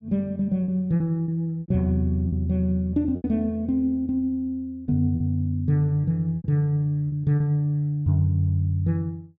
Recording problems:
lost packets; 6% of the sound replaced, filled with repeated pitch periods

